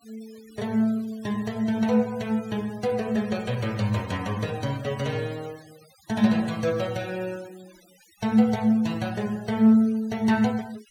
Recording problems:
denoising artefacts; signal-to-artefact ratio 22 dB

